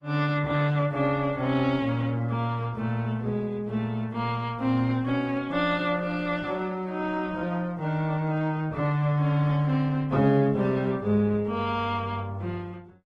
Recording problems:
codec artefacts; AAC, then Opus, log-spectral distance 2 dB

